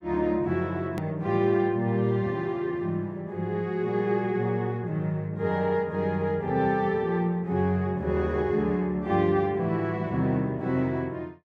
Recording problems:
edit click; at 1 s

